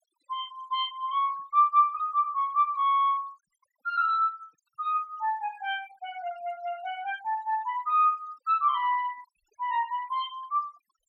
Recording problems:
denoising artefacts; signal-to-artefact ratio 27 dB

